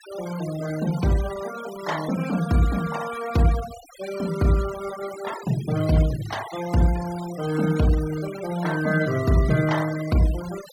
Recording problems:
denoising artefacts; signal-to-artefact ratio 15 dB

